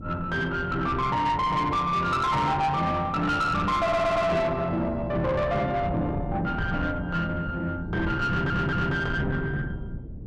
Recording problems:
distortion; soft clipping, signal-to-distortion ratio 11 dB
wind on the microphone; below 240 Hz, SNR 9 dB
audio stuttering; at 4 s and at 8.5 s

